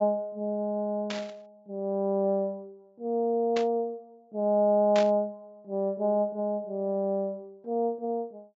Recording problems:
low-pass filter; nothing above 8 kHz
static burst; at 1 s, at 3.5 s and at 5 s; peak -3 dB vs average level

